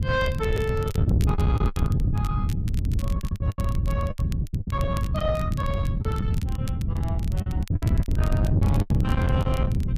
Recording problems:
distorted audio; soft clipping, signal-to-distortion ratio 10 dB
wind on the microphone; below 150 Hz, SNR -6 dB
crackle; vinyl, SNR 15 dB
lost packets; 11% of the sound replaced, filled with the last packet

